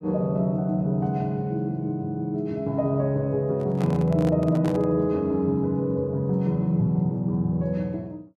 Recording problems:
microphone handling noise; from 3.5 to 5 s; peak -7 dB vs average level

